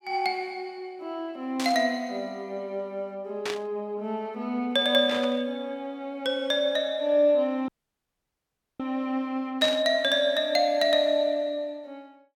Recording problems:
static burst; 4 times, first at 1.5 s; peak -2 dB vs average level
audio cutting out; at 7.5 s for 1 s

